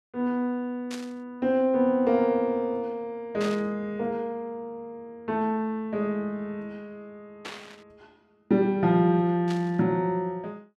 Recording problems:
burst of static; 4 times, first at 1 s; peak -7 dB vs average level

